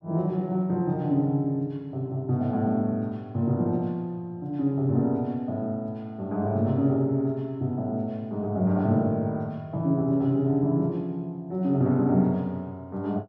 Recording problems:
none

